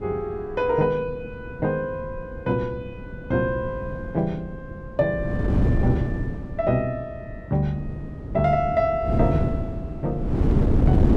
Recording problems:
wind on the microphone; below 250 Hz, SNR 1 dB

